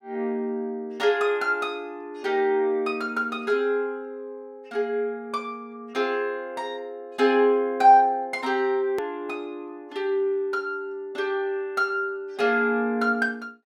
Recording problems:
click at an edit; at 9 s

